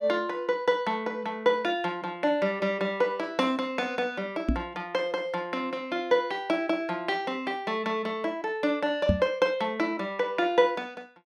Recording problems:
microphone thump; at 4.5 s and at 9 s; peak +6 dB vs average level

